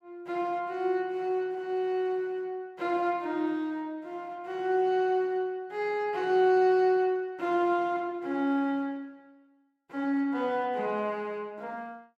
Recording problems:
none

